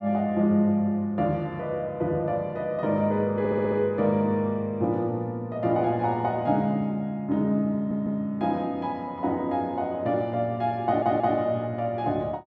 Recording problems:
audio stuttering; at 3.5 s, at 8 s and at 11 s

